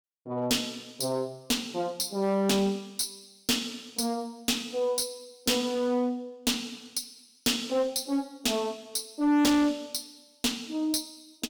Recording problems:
distorted audio; hard clipping, uneven, signal-to-distortion ratio 6 dB

